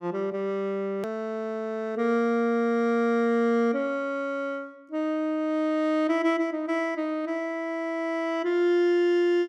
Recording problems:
hard cut with a click; at 1 s

